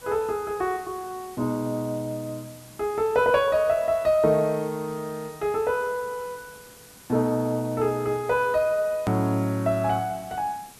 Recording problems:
hiss; slope -2 dB per octave, SNR 21 dB
click at an edit; at 9 s

